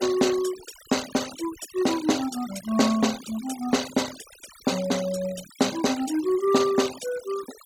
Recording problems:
noise reduction artefacts; signal-to-artefact ratio 13 dB

